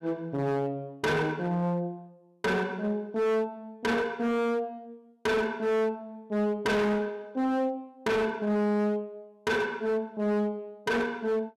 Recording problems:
distorted audio; hard clipping, signal-to-distortion ratio 6 dB

